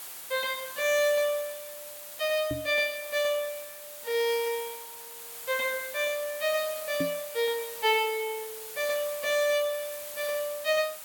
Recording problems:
background hiss; slope 0 dB per octave, SNR 10 dB
microphone bump; at 2.5 s and at 7 s; peak +1 dB vs average level

